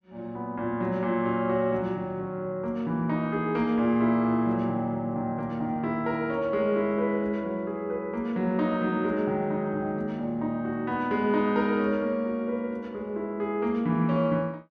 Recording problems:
none

